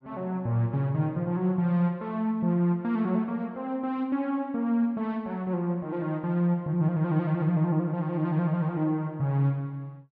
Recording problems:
none

